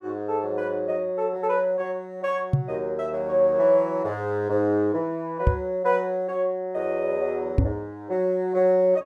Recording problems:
knock on the microphone; at 2.5 s, at 5.5 s and at 7.5 s; peak +7 dB vs average level

